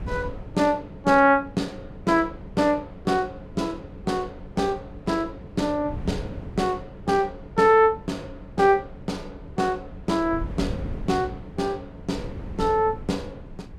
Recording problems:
wind noise; below 180 Hz, SNR 15 dB

